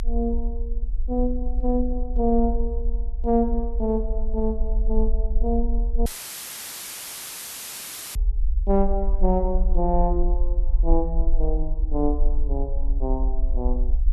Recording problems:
low-frequency rumble; below 42 Hz, strongest tone 20 Hz, SNR 0 dB
audio cutting out; at 6 s for 2 s; filled with static

